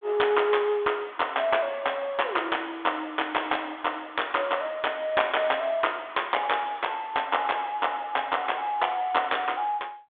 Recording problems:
telephone audio; 260 Hz to 3.5 kHz, G.726

